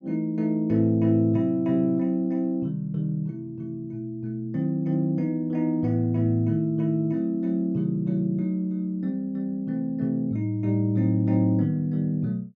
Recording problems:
none

